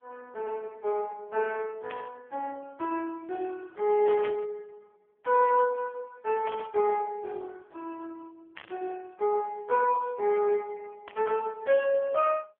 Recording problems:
phone line; 340 Hz to 2.6 kHz, AMR-NB
burst of static; 5 times, first at 2 s; peak -8 dB vs average level

